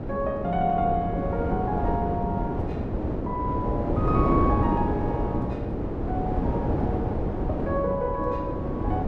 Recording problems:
wind noise; below 410 Hz, SNR -1 dB

